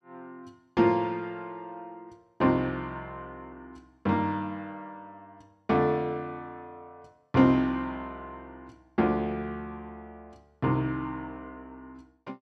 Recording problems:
none

